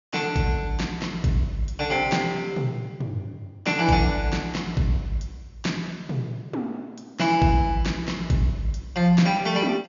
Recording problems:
treble missing; nothing above 7.1 kHz

